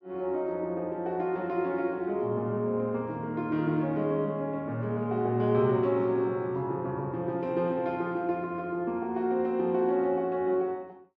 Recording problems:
none

